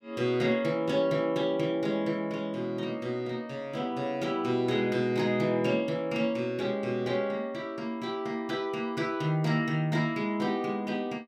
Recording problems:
none

